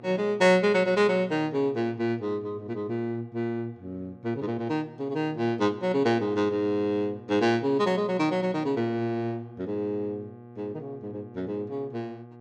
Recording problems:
hum; 60 Hz, harmonics up to 1.2 kHz, SNR 20 dB

